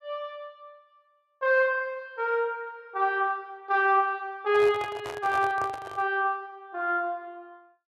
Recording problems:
microphone handling noise; from 4.5 to 6 s; peak -6 dB vs average level

